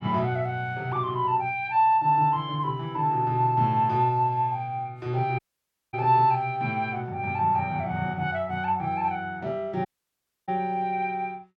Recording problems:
dropout; at 5.5 s for 0.5 s and at 10 s for 0.5 s

